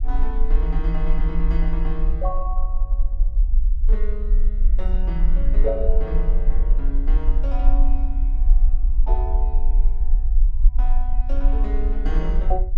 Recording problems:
rumble; below 40 Hz, strongest tone 22 Hz, SNR -9 dB

